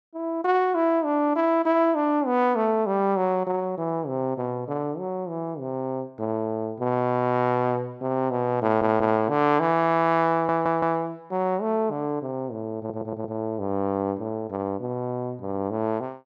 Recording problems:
stutter; at 8.5 s, at 10 s and at 13 s

